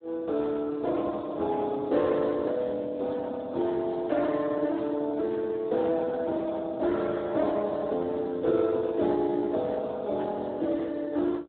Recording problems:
telephone audio; 240 Hz to 2 kHz, Speex

